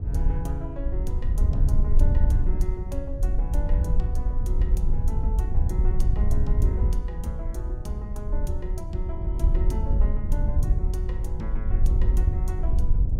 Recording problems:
wind noise; below 62 Hz, SNR -9 dB

